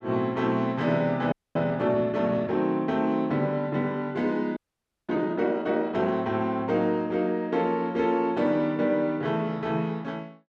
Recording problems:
frozen audio; at 1.5 s and at 4.5 s for 0.5 s

